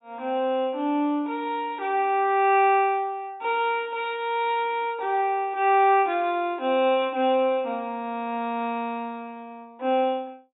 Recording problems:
low-pass filter; nothing above 4 kHz

